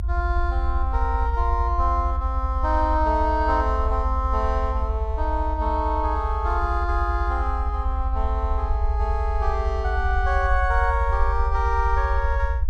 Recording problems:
rumble; below 68 Hz, strongest tone 52 Hz, SNR 0 dB

